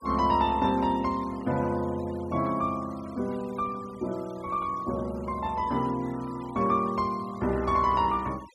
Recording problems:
noise reduction artefacts; signal-to-artefact ratio 22 dB

